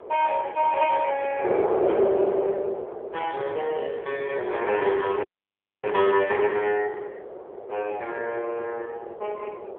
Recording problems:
phone line; 340 Hz to 3.3 kHz, AMR-NB
wind on the microphone; below 620 Hz, SNR 5 dB
audio freezing; at 5 s for 0.5 s

